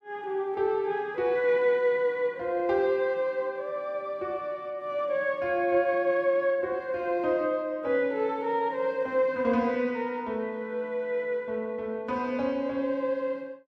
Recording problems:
none

